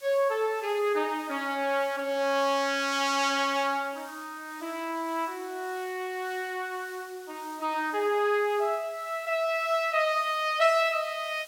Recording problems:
background hiss; slope +2 dB per octave, SNR 22 dB

